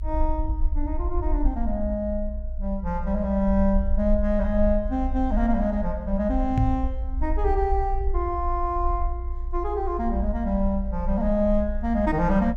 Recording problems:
low-frequency rumble; below 58 Hz, strongest tone 26 Hz, SNR 4 dB
microphone bump; at 6.5 s; peak +7 dB vs average level

